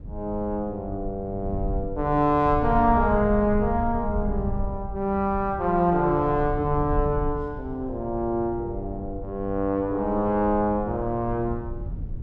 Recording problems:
low-frequency rumble; below 92 Hz, SNR 9 dB

